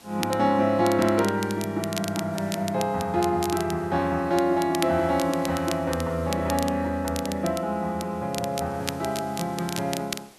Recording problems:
background hiss; SNR 24 dB
crackling; vinyl, SNR 12 dB

